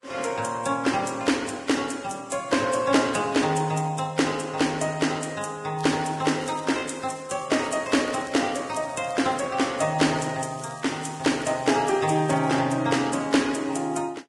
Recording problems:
lossy codec; Vorbis, log-spectral distance 5 dB, nothing above 10.4 kHz
crackle; from 6 to 7.5 s, from 7.5 to 9.5 s and from 10 to 13 s; loose cable, SNR 23 dB

